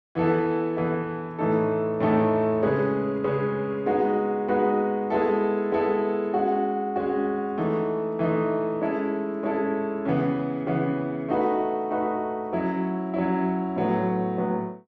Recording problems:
none

